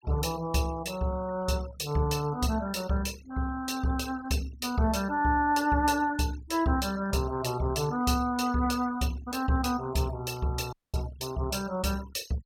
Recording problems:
denoising artefacts; signal-to-artefact ratio 19 dB
audio cutting out; at 11 s

